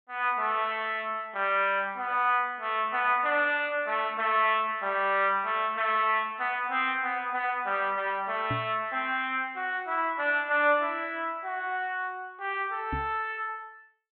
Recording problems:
treble cut off; nothing above 4 kHz
microphone bump; at 8.5 s and at 13 s; peak -3 dB vs average level

